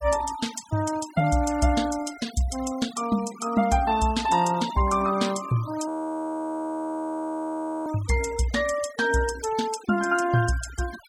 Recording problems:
noise reduction artefacts; signal-to-artefact ratio 17 dB
frozen audio; at 6 s for 2 s

